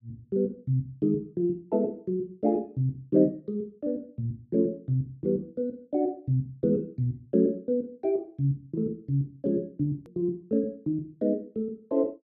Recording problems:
click at an edit; at 10 s

